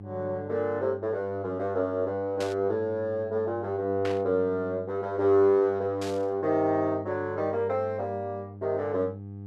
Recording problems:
hum; 50 Hz, harmonics up to 500 Hz, SNR 15 dB
static burst; at 2.5 s, at 4 s and at 6 s; peak -5 dB vs average level

